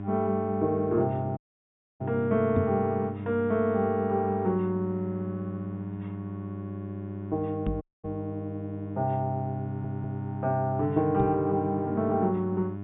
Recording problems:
treble missing; nothing above 4 kHz
hum; 50 Hz, harmonics up to 1.1 kHz, SNR 8 dB
dropout; at 1.5 s for 0.5 s and at 8 s
microphone bump; at 2.5 s, at 7.5 s and at 11 s; peak +3 dB vs average level
stutter; at 9.5 s

